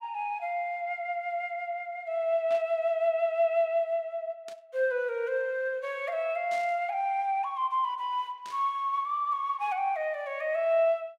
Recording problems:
burst of static; 4 times, first at 2.5 s; peak -12 dB vs average level

